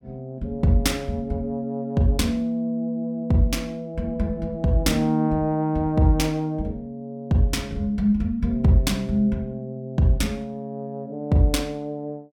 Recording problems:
none

